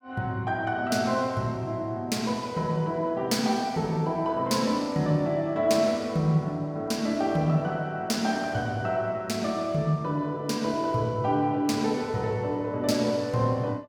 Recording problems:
none

